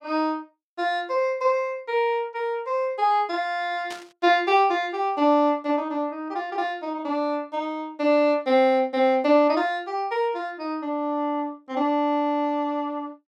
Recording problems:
static burst; at 4 s; peak -9 dB vs average level

